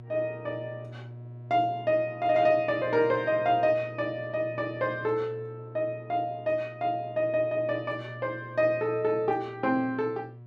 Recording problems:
hum; 60 Hz, harmonics up to 720 Hz, SNR 16 dB

